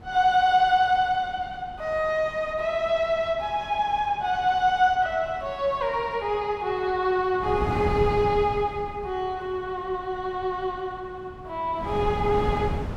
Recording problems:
wind on the microphone; below 320 Hz, SNR 13 dB

